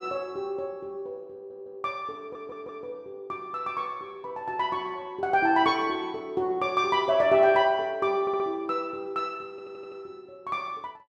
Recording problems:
audio stuttering; 4 times, first at 1.5 s

